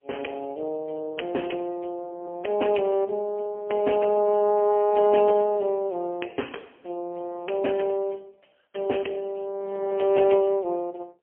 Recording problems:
phone line; 280 Hz to 3.2 kHz, AMR-NB, then MP3

